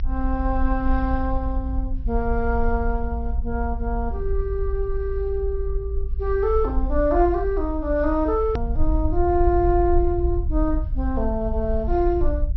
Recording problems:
treble missing; nothing above 5.7 kHz
rumble; below 56 Hz, SNR 3 dB
edit click; at 8.5 s

